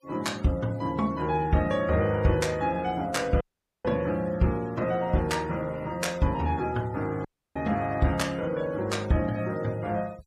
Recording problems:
noise reduction artefacts; signal-to-artefact ratio 23 dB
audio cutting out; at 3.5 s and at 7.5 s

